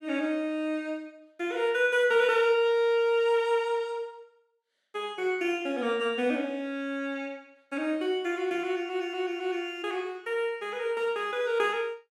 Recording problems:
none

